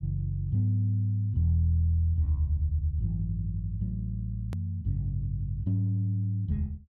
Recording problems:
edit click; at 4.5 s

